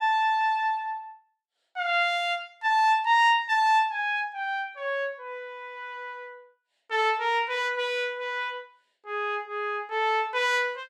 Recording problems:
none

